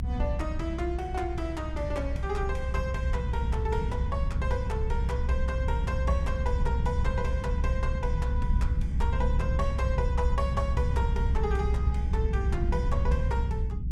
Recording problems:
rumble; below 86 Hz, strongest tone 64 Hz, SNR -5 dB

